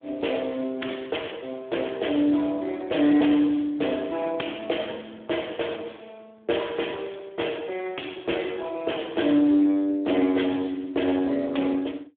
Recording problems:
phone line; 240 Hz to 3.5 kHz, Speex

